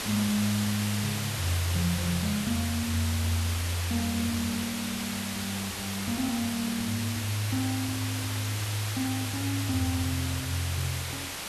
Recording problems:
hiss; slope -1 dB per octave, SNR 3 dB
wind on the microphone; below 650 Hz, SNR 24 dB

